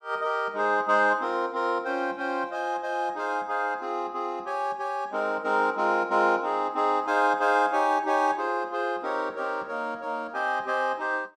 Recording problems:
none

